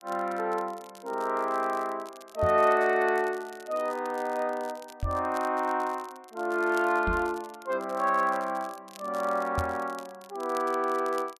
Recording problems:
crackle; vinyl, SNR 23 dB
knock on the microphone; 4 times, first at 2.5 s; peak 0 dB vs average level

